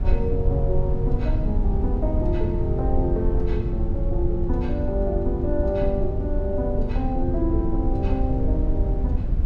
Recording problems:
rumble; below 82 Hz, SNR -2 dB

